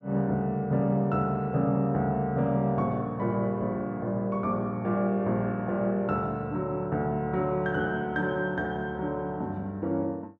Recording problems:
none

